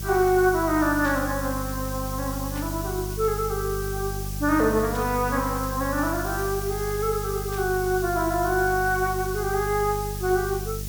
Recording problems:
mains hum; 50 Hz, harmonics up to 400 Hz, SNR 8 dB
background hiss; slope +7 dB per octave, SNR 11 dB
static burst; 4 times, first at 1 s; peak -13 dB vs average level

